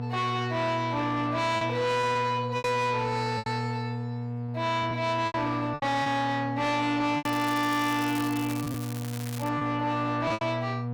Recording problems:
distortion; soft clipping, signal-to-distortion ratio 8 dB
hum; 60 Hz, harmonics up to 960 Hz, SNR 6 dB
packet loss; 7% of the sound replaced, filled with repeated pitch periods
crackle; from 7 to 9.5 s; loose cable, SNR 13 dB

